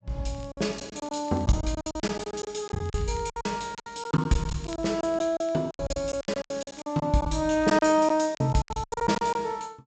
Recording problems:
treble cut off; nothing above 8 kHz
crackle; vinyl, SNR 28 dB
lost packets; 18% of the sound replaced, filled with silence

